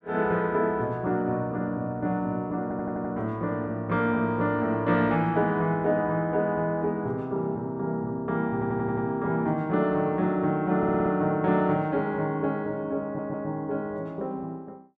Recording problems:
audio stuttering; 4 times, first at 2.5 s

